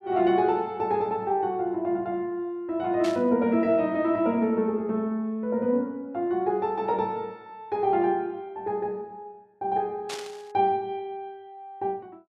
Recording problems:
burst of static; at 3 s and at 10 s; peak -5 dB vs average level

